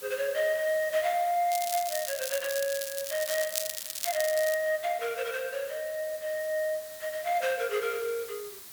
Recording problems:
hiss; slope +1 dB per octave, SNR 13 dB
crackling; from 1.5 to 4.5 s; loose cable, SNR 4 dB

